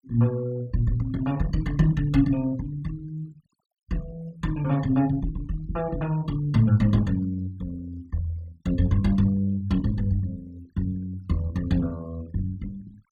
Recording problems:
noise reduction artefacts; signal-to-artefact ratio 24 dB

